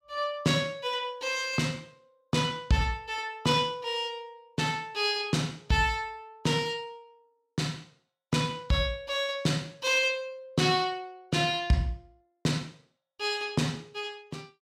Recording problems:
none

